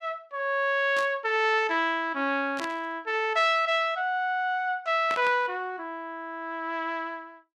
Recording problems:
burst of static; at 1 s, at 2.5 s and at 5 s; peak -5 dB vs average level

